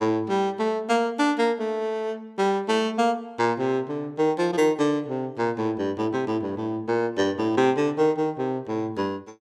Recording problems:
none

